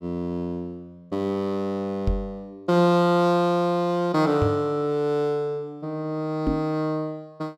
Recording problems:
microphone thump; at 2 s, at 4.5 s and at 6.5 s; peak +3 dB vs average level

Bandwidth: 14 kHz